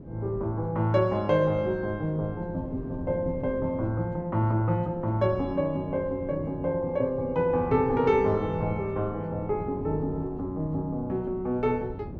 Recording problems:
wind noise; below 290 Hz, SNR 13 dB

